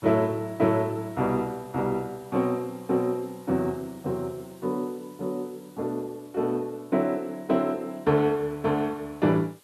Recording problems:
background hiss; slope -1 dB per octave, SNR 27 dB

